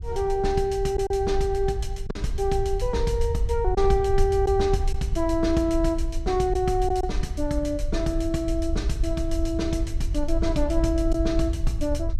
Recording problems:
rumble; below 64 Hz, SNR 5 dB
packet loss; 1.6% of the sound replaced, filled with silence

